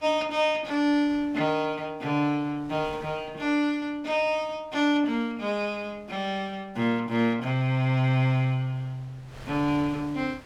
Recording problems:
wind noise; below 1.7 kHz, SNR 25 dB

